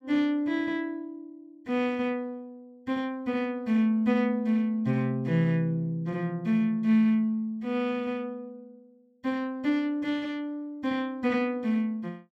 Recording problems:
none

